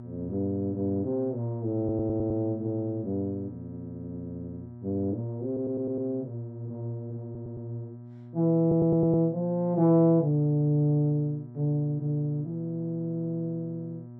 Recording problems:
hum; 60 Hz, harmonics up to 720 Hz, SNR 15 dB
audio stuttering; 4 times, first at 2 s

